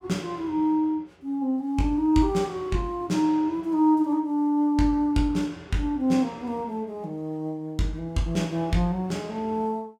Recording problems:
none

